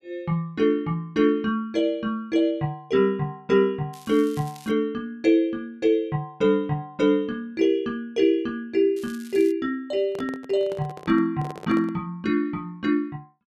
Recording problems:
crackling; at 4 s and at 9 s; loose cable, SNR 23 dB
microphone handling noise; from 10 to 12 s; peak -9 dB vs average level

